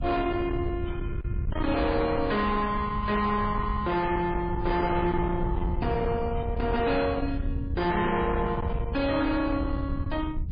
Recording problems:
lossy compression; MP3, log-spectral distance 2 dB, nothing above 4 kHz
distorted audio; soft clipping, signal-to-distortion ratio 8 dB
wind on the microphone; below 140 Hz, SNR 5 dB

